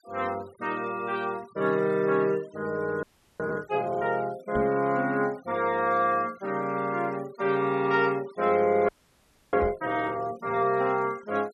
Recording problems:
noise reduction artefacts; signal-to-artefact ratio 25 dB
frozen audio; at 3 s and at 9 s for 0.5 s
microphone thump; at 4.5 s and at 9.5 s; peak -1 dB vs average level

